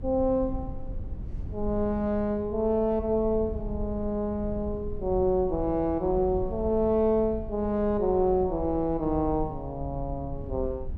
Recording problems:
wind noise; below 92 Hz, SNR 12 dB

